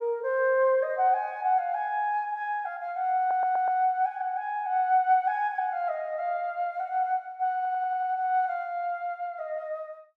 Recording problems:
audio stuttering; at 3 s and at 7.5 s

